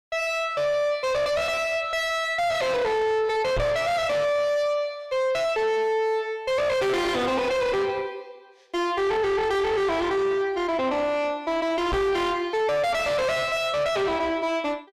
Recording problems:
distorted audio; soft clipping, signal-to-distortion ratio 6 dB
microphone thump; at 3.5 s and at 12 s; peak +2 dB vs average level

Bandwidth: 14.5 kHz